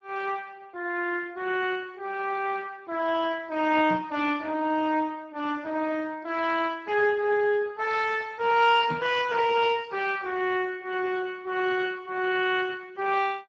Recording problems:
lossy compression; Speex, log-spectral distance 4 dB
microphone thump; at 4 s and at 9 s; peak -1 dB vs average level

